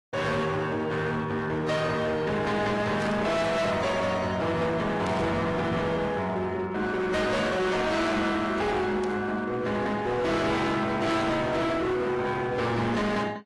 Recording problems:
lossy codec; AAC, log-spectral distance 3 dB, nothing above 11.3 kHz
distorted audio; hard clipping, signal-to-distortion ratio 7 dB
static burst; 4 times, first at 3 s; peak -11 dB vs average level

